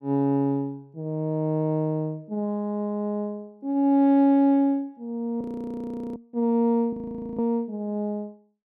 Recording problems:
frozen audio; at 5.5 s for 1 s and at 7 s

